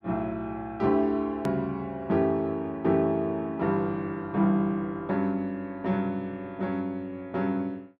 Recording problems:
edit click; at 1.5 s

